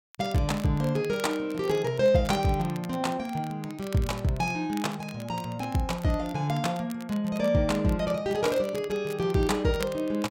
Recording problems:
crackle; vinyl, SNR 19 dB

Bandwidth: 16 kHz